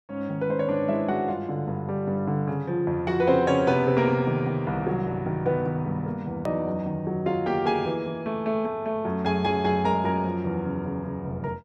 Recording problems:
hard cut with a click; at 6.5 s

